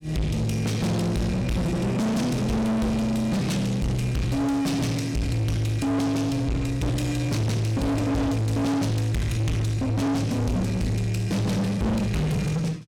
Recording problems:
distortion; soft clipping, signal-to-distortion ratio 6 dB

